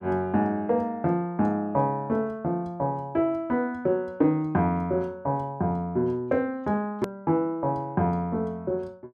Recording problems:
click at an edit; at 7 s

